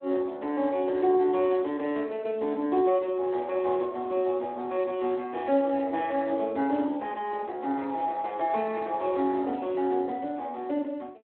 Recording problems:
phone line; 240 Hz to 3.7 kHz, Speex

